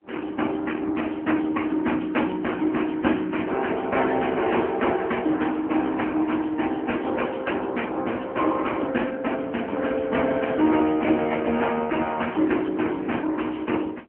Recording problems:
telephone audio; 220 Hz to 3.2 kHz, AMR-NB

